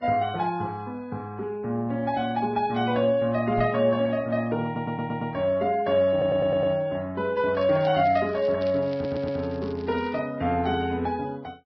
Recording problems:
lossy compression; Vorbis, log-spectral distance 2 dB
knock on the microphone; at 3.5 s; peak -4 dB vs average level
audio stuttering; at 4.5 s, at 6 s and at 9 s
crackle; from 7.5 to 8.5 s and from 8.5 to 10 s; loose cable, SNR 25 dB

